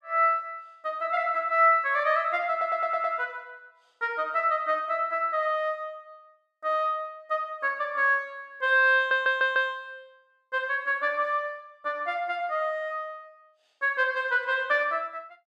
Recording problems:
stutter; at 2.5 s and at 9 s

